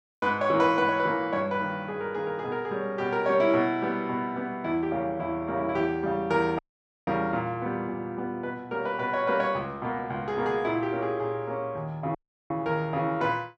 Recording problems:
dropout; at 6.5 s and at 12 s

